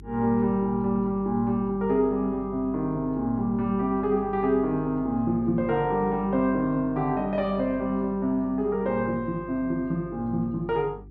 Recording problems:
hum; 50 Hz, harmonics up to 400 Hz, SNR 19 dB

